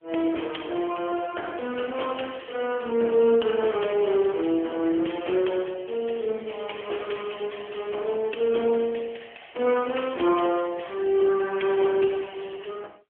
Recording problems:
telephone audio; 280 Hz to 3.3 kHz, AMR-NB
crackling; from 6.5 to 7.5 s; loose cable, SNR 23 dB

